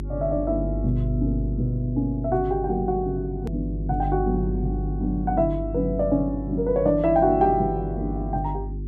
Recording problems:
hum; 50 Hz, harmonics up to 400 Hz, SNR 6 dB
edit click; at 3.5 s

